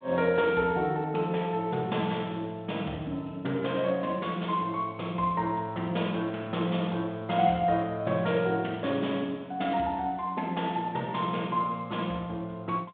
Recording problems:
phone line; 130 Hz to 3.6 kHz, G.726

